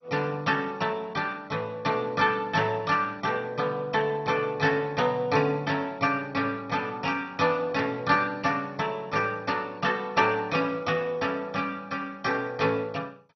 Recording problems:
lossy codec; MP2, log-spectral distance 3 dB, nothing above 5.7 kHz

